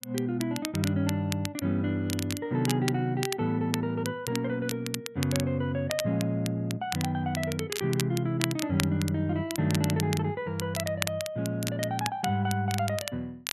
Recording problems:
crackle; vinyl, SNR 8 dB

